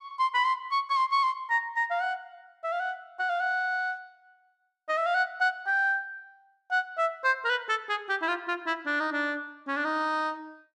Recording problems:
none

